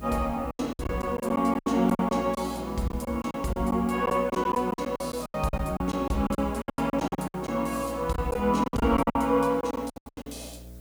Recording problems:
hum; 60 Hz, harmonics up to 660 Hz, SNR 19 dB
background hiss; SNR 27 dB
lost packets; 18% of the sound replaced, filled with silence

